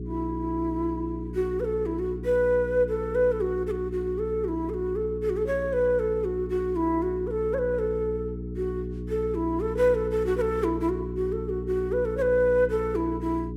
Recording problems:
hum; 60 Hz, harmonics up to 420 Hz, SNR 9 dB

